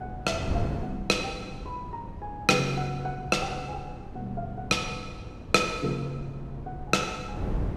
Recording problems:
wind noise; below 250 Hz, SNR 9 dB

